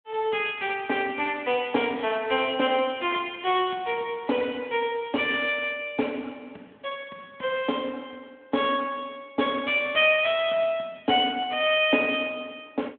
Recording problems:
telephone audio; 190 Hz to 3.4 kHz, Speex

